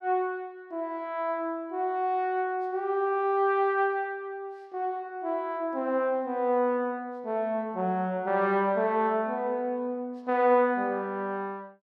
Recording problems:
none

